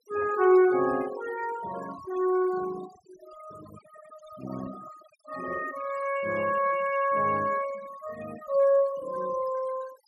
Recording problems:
noise reduction artefacts; signal-to-artefact ratio 16 dB

